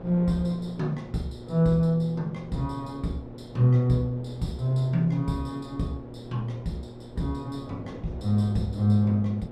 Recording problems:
hum; 60 Hz, harmonics up to 960 Hz, SNR 17 dB
wind on the microphone; below 530 Hz, SNR 18 dB

